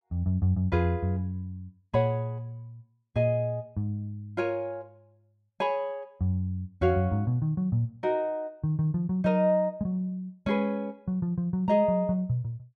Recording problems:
none

